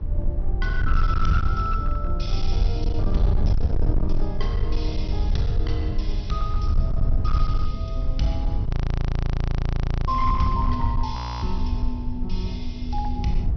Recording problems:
treble missing; nothing above 5.9 kHz
distorted audio; hard clipping, uneven, signal-to-distortion ratio 10 dB
hum; 60 Hz, harmonics up to 420 Hz, SNR 21 dB
low-frequency rumble; below 76 Hz, SNR -4 dB
frozen audio; at 8.5 s for 1.5 s and at 11 s

